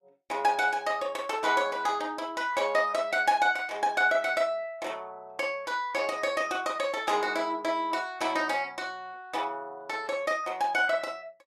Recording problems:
lossy codec; Vorbis, log-spectral distance 2 dB, nothing above 13.8 kHz

